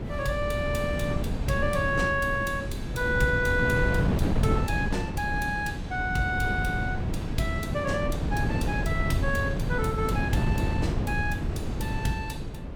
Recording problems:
wind on the microphone; below 230 Hz, SNR 1 dB

